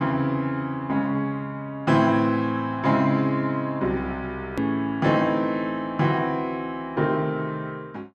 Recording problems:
edit click; at 4.5 s

